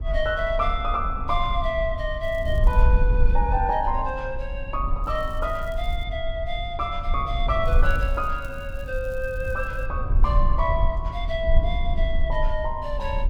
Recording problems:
rumble; below 56 Hz, SNR 0 dB
crackling; at 2 s, from 5 to 6 s and from 7.5 to 10 s; loose cable, SNR 27 dB

